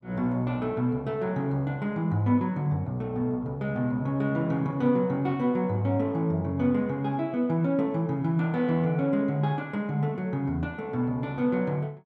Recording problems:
none

